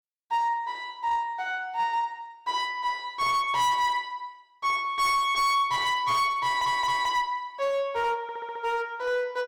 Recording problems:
distorted audio; hard clipping, uneven, signal-to-distortion ratio 7 dB
stutter; at 6.5 s and at 8 s

